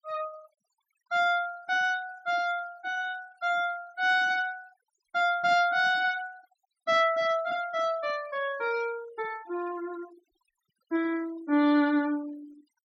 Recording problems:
denoising artefacts; signal-to-artefact ratio 22 dB

